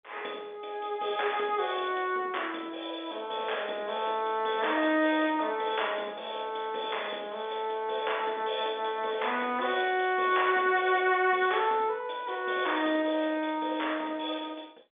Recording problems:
phone line; 220 Hz to 3.6 kHz, G.711

